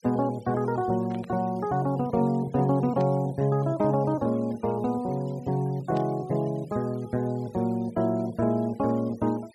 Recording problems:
noise reduction artefacts; signal-to-artefact ratio 26 dB
static burst; at 1 s, at 3 s and at 6 s; peak -17 dB vs average level

